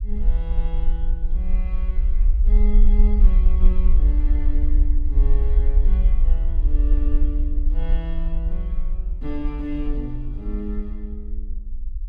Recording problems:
low-frequency rumble; below 46 Hz, SNR -12 dB

